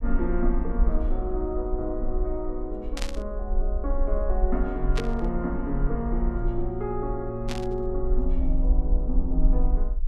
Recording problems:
rumble; below 44 Hz, strongest tone 24 Hz, SNR -1 dB
burst of static; at 3 s, at 5 s and at 7.5 s; peak +1 dB vs average level

